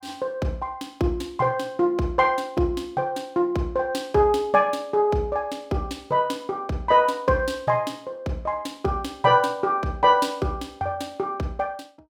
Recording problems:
none

